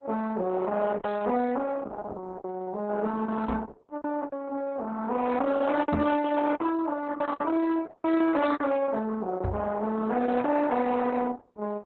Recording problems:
codec artefacts; Opus, then Opus, log-spectral distance 3 dB
distortion; soft clipping, signal-to-distortion ratio 10 dB
packet loss; 10% of the sound replaced, filled with repeated pitch periods
microphone thump; at 3.5 s, at 6 s and at 9.5 s; peak +4 dB vs average level

